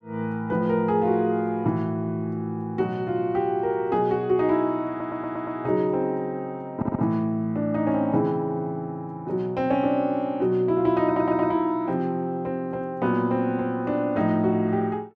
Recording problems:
audio stuttering; at 5 s, at 7 s and at 11 s

